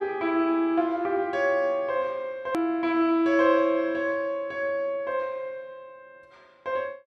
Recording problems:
hard cut with a click; at 2.5 s

